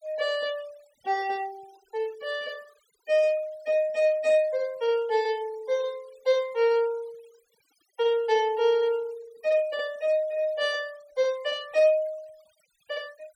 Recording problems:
denoising artefacts; signal-to-artefact ratio 24 dB

